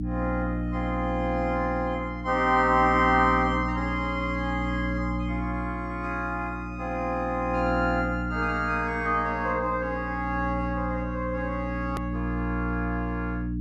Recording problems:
electrical hum; 60 Hz, harmonics up to 300 Hz, SNR 4 dB
click at an edit; at 12 s

